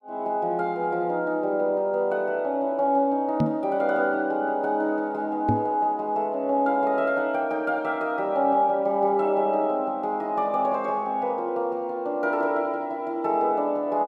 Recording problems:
microphone thump; at 3.5 s and at 5.5 s; peak +4 dB vs average level

